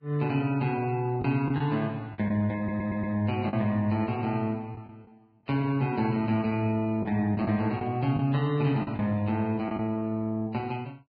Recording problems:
codec artefacts; Vorbis, log-spectral distance 2 dB, nothing above 4.5 kHz
lost packets; 4% of the sound replaced, filled with the last packet
stutter; at 2.5 s

